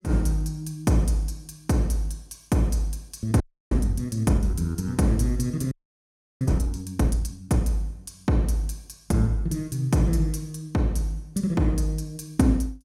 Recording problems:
frozen audio; at 3.5 s and at 5.5 s for 0.5 s

